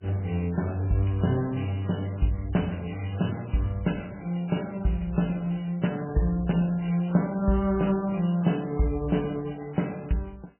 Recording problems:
codec artefacts; MP3, log-spectral distance 6 dB, nothing above 3 kHz

